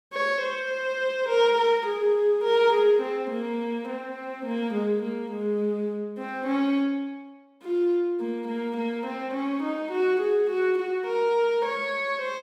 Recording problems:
none

